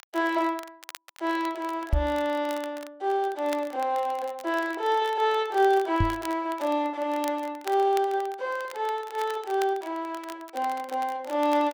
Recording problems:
crackle; vinyl, SNR 19 dB
microphone bump; at 2 s and at 6 s; peak +6 dB vs average level

